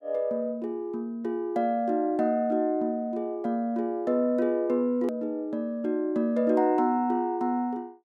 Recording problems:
edit click; at 5 s

